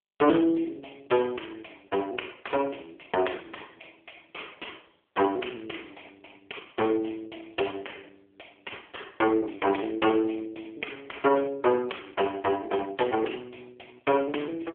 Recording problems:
telephone audio; 300 Hz to 3.3 kHz, AMR-NB

